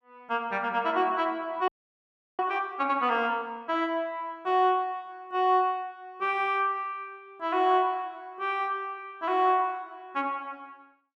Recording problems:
audio freezing; at 1.5 s for 0.5 s

